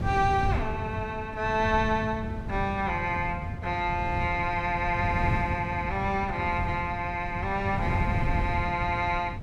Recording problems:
wind noise; below 160 Hz, SNR 5 dB

